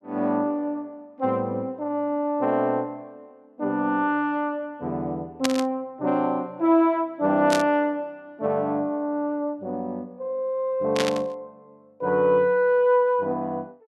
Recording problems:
static burst; at 5.5 s, at 7.5 s and at 11 s; peak +3 dB vs average level

